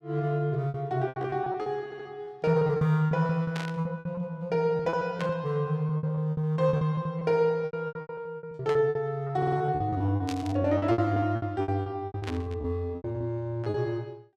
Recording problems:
lost packets; 18% of the sound replaced, filled with repeated pitch periods
stutter; at 2 s and at 9.5 s
static burst; 5 times, first at 3.5 s; peak -5 dB vs average level

